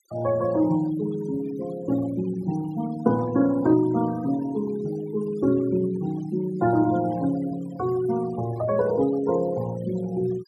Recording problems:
denoising artefacts; signal-to-artefact ratio 18 dB

